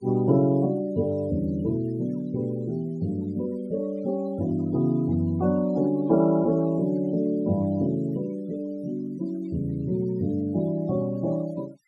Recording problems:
noise reduction artefacts; signal-to-artefact ratio 25 dB

